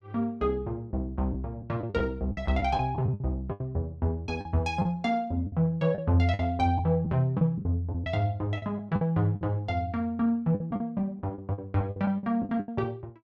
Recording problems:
lost packets; 11% of the sound replaced, filled with the last packet

